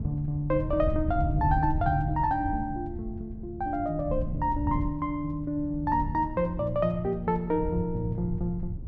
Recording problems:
wind noise; below 120 Hz, SNR 6 dB

